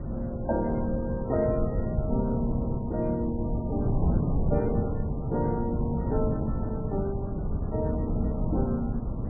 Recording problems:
codec artefacts; MP3, log-spectral distance 2 dB, nothing above 2.5 kHz
wind noise; below 200 Hz, SNR -1 dB

